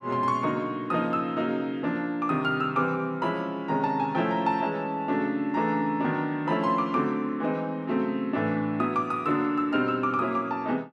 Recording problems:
none

